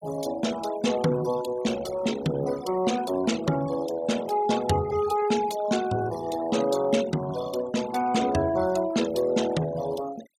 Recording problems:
denoising artefacts; signal-to-artefact ratio 15 dB

